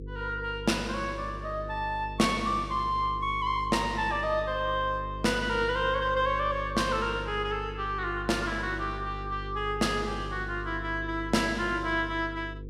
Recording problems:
mains hum; 50 Hz, harmonics up to 500 Hz, SNR 11 dB

